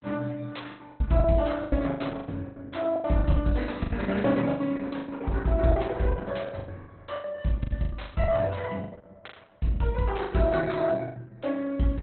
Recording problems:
codec artefacts; Opus, log-spectral distance 4 dB, nothing above 4.1 kHz
packet loss; 19% of the sound replaced, filled with the last packet

